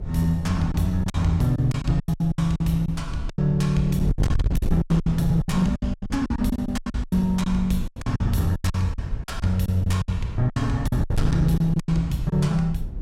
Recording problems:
distortion; hard clipping, signal-to-distortion ratio 11 dB
wind noise; below 110 Hz, SNR 7 dB
packet loss; 17% of the sound replaced, filled with silence

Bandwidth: 16 kHz